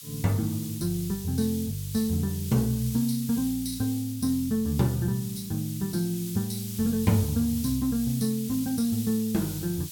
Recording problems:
background hiss; SNR 11 dB

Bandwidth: 17 kHz